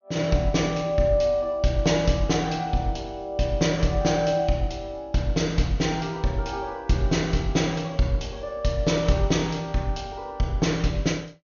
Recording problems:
treble missing; nothing above 6.6 kHz

